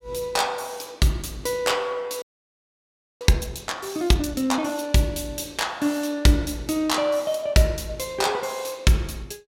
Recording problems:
audio freezing; at 2 s for 1 s

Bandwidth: 16 kHz